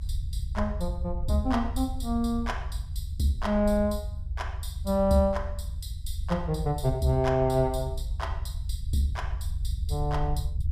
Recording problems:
rumble; below 78 Hz, SNR 6 dB

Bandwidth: 14.5 kHz